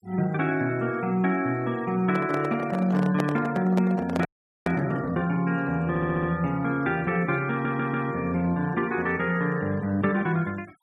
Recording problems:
noise reduction artefacts; signal-to-artefact ratio 24 dB
microphone handling noise; from 2 to 5 s; peak +1 dB vs average level
frozen audio; at 4.5 s
audio stuttering; at 6 s and at 7.5 s

